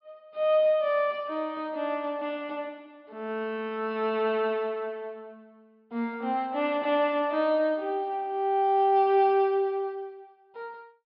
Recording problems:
treble cut off; nothing above 5.5 kHz

